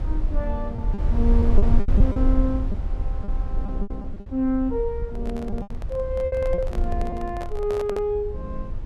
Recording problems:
rumble; below 62 Hz, SNR 0 dB
lost packets; 9% of the sound replaced, filled with repeated pitch periods
handling noise; from 5 to 8 s; peak -3 dB vs average level

